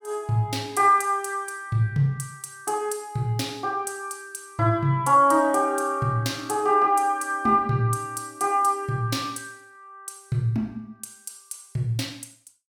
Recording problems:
none

